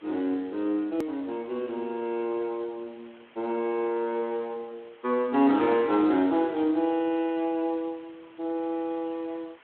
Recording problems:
phone line; 220 Hz to 3.5 kHz, Speex
background hiss; SNR 27 dB
click at an edit; at 1 s

